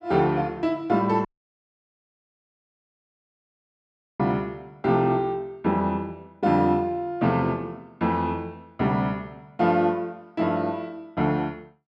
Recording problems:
audio cutting out; at 1.5 s for 3 s

